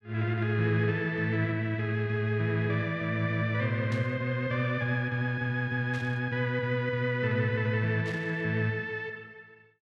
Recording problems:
static burst; at 4 s, at 6 s and at 8 s; peak -11 dB vs average level

